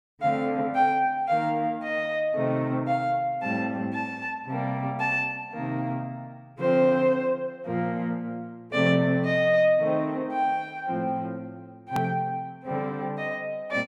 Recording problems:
edit click; at 12 s

